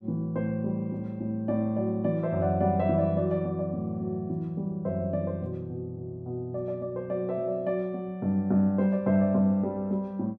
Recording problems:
none

